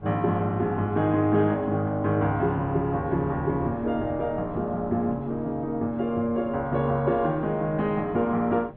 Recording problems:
treble cut off; nothing above 4 kHz
wind noise; below 360 Hz, SNR 20 dB

